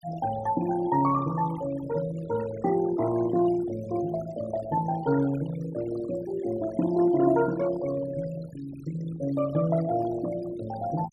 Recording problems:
noise reduction artefacts; signal-to-artefact ratio 15 dB

